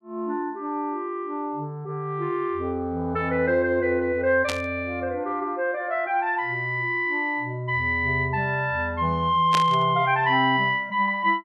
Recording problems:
static burst; at 4.5 s and at 9.5 s; peak +1 dB vs average level

